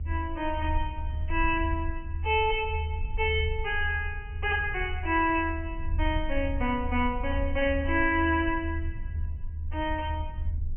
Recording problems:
treble cut off; nothing above 3.1 kHz
low-frequency rumble; below 78 Hz, SNR 5 dB

